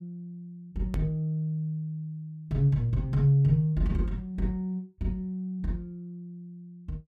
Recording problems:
hard cut with a click; at 1 s

